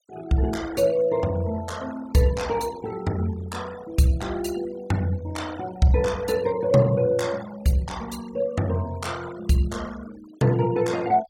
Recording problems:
denoising artefacts; signal-to-artefact ratio 19 dB

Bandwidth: 17.5 kHz